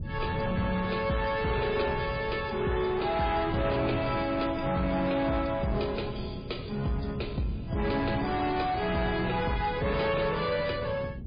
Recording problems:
lossy codec; MP3, log-spectral distance 4 dB, nothing above 4.8 kHz
distortion; soft clipping, signal-to-distortion ratio 12 dB
wind noise; below 200 Hz, SNR 9 dB

